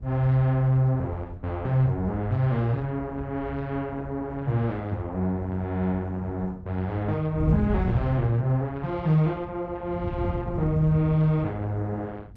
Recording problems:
codec artefacts; Opus, log-spectral distance 2 dB
wind noise; below 100 Hz, SNR 7 dB

